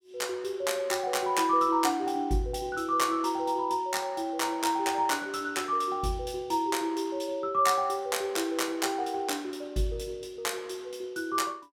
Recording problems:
none

